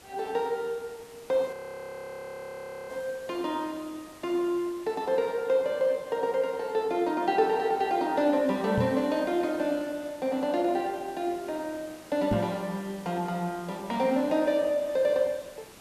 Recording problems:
background hiss; slope -4 dB per octave, SNR 21 dB
frozen audio; at 1.5 s for 1.5 s
microphone bump; at 9 s and at 12 s; peak +3 dB vs average level

